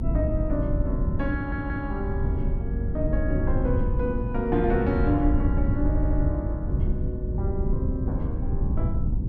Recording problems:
low-frequency rumble; below 110 Hz, SNR -2 dB
stutter; at 1.5 s and at 6 s

